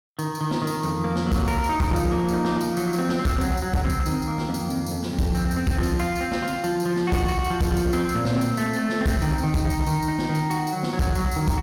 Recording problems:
distortion; hard clipping, uneven, signal-to-distortion ratio 10 dB

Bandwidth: 17.5 kHz